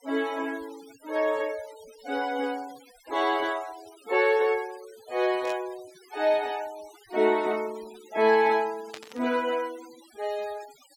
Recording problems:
noise reduction artefacts; signal-to-artefact ratio 21 dB
burst of static; at 5.5 s and at 9 s; peak -8 dB vs average level

